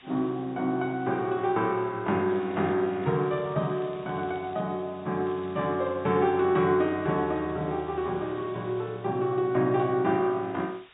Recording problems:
treble missing; nothing above 4 kHz
hiss; SNR 27 dB
crackling; at 2.5 s, from 3 to 4.5 s and at 5.5 s; loose cable, SNR 28 dB

